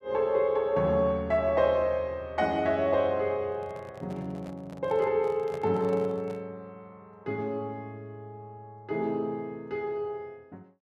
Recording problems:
microphone handling noise; from 3.5 to 6.5 s; peak -8 dB vs average level

